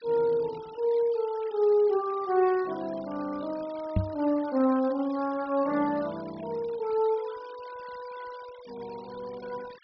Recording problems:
treble cut off; nothing above 5.5 kHz
noise reduction artefacts; signal-to-artefact ratio 22 dB
microphone thump; at 4 s; peak +5 dB vs average level

